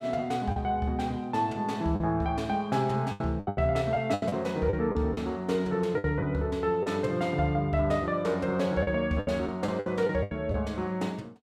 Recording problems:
lost packets; 8% of the sound replaced, filled with the last packet

